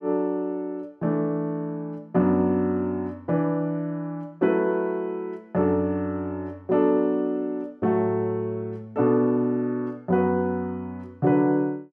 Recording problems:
none

